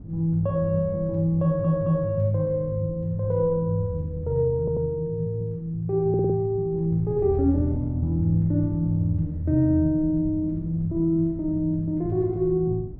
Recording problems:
wind on the microphone; below 170 Hz, SNR 16 dB
audio stuttering; at 1.5 s, at 4.5 s and at 6 s

